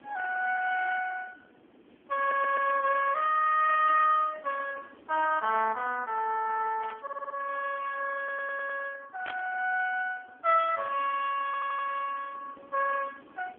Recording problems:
phone line; 240 Hz to 2.9 kHz, AMR-NB
hiss; SNR 28 dB
stutter; 4 times, first at 2 s
static burst; at 4 s, at 7 s and at 9.5 s; peak -10 dB vs average level

